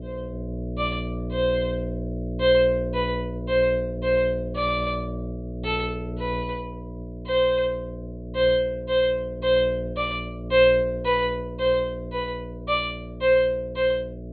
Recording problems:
low-pass filter; nothing above 4.4 kHz
hum; 60 Hz, harmonics up to 660 Hz, SNR 9 dB

